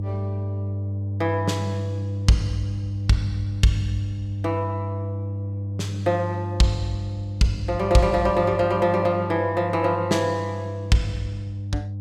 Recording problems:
hum; 50 Hz, harmonics up to 500 Hz, SNR 5 dB

